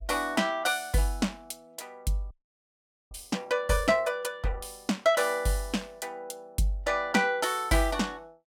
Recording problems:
audio freezing; at 2.5 s for 1 s

